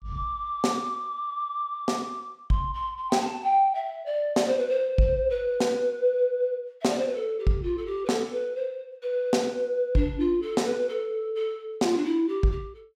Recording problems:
none

